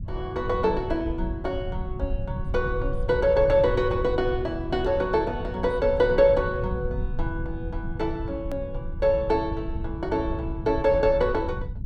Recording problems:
low-frequency rumble; below 100 Hz, SNR 8 dB
click at an edit; at 8.5 s

